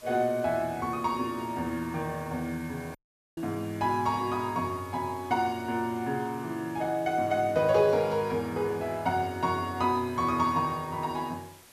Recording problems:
hiss; slope -1 dB per octave, SNR 23 dB
dropout; at 3 s

